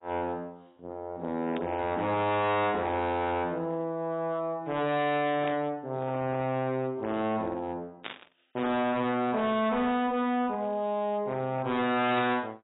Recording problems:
lossy codec; AAC, log-spectral distance 3 dB, nothing above 3.8 kHz
distortion; hard clipping, signal-to-distortion ratio 8 dB
burst of static; 4 times, first at 1.5 s; peak -5 dB vs average level

